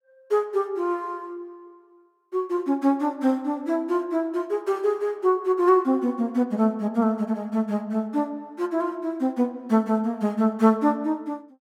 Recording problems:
none

